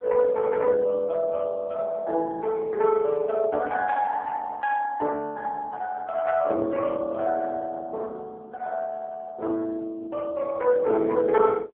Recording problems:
telephone audio; 280 Hz to 2.5 kHz, AMR-NB

